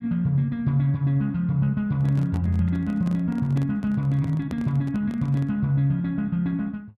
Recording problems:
microphone handling noise; from 2 to 5.5 s; peak -6 dB vs average level

